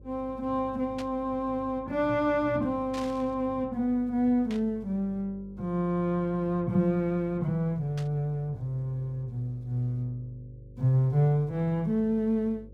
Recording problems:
electrical hum; 50 Hz, harmonics up to 550 Hz, SNR 22 dB
static burst; 4 times, first at 1 s; peak -9 dB vs average level

